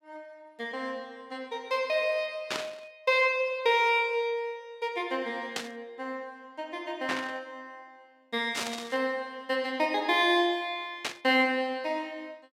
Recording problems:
burst of static; 5 times, first at 2.5 s; peak +2 dB vs average level

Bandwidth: 16 kHz